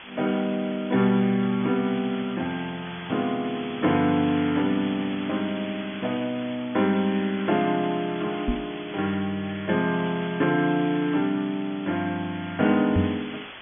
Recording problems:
treble cut off; nothing above 3.4 kHz
background hiss; SNR 14 dB
microphone bump; at 8.5 s and at 13 s; peak +5 dB vs average level

